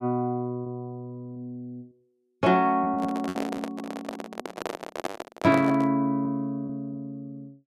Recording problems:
packet loss; 5% of the sound replaced, filled with repeated pitch periods
microphone handling noise; from 3 to 6 s; peak +1 dB vs average level

